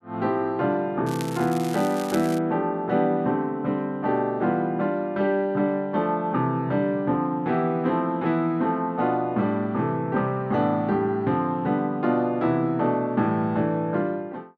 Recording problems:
crackling; from 1 to 2.5 s; loose cable, SNR 15 dB

